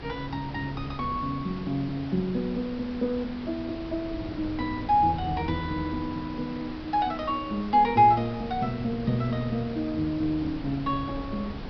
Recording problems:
treble cut off; nothing above 5.5 kHz
hiss; SNR 15 dB
wind on the microphone; below 240 Hz, SNR 14 dB

